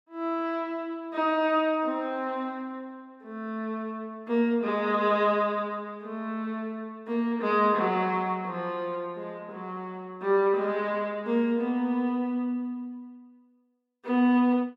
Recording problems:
none

